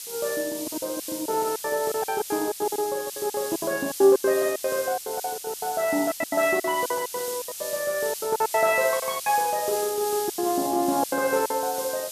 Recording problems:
background hiss; SNR 8 dB
lost packets; 18% of the sound replaced, filled with silence

